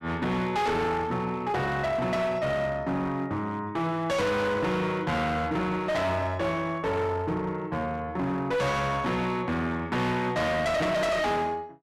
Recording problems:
distortion; hard clipping, uneven, signal-to-distortion ratio 7 dB

